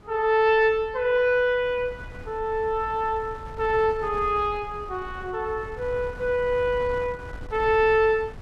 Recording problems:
wind noise; below 210 Hz, SNR 18 dB

